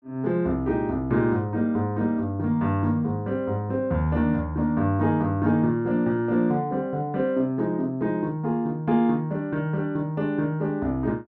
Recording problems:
none

